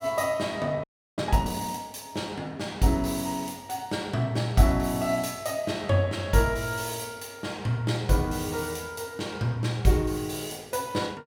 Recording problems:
audio freezing; at 1 s

